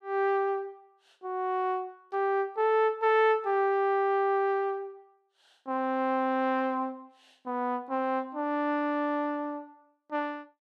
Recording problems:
none

